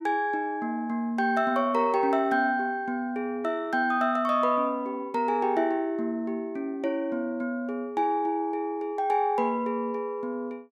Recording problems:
none

